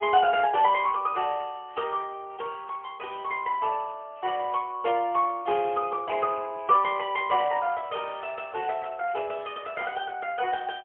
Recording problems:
telephone audio; 300 Hz to 3.3 kHz, AMR-NB, then MP3

